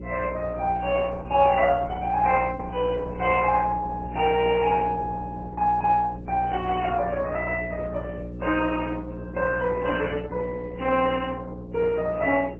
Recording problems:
lossy compression; MP3, then Opus, log-spectral distance 4 dB, nothing above 2.8 kHz
hum; 60 Hz, harmonics up to 540 Hz, SNR 11 dB

